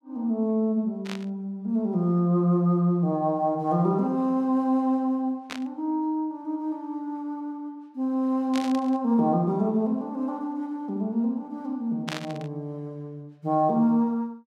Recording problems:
static burst; 4 times, first at 1 s; peak -3 dB vs average level

